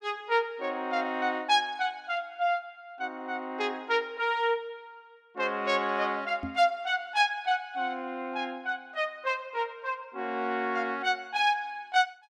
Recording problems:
microphone thump; at 6.5 s; peak -3 dB vs average level

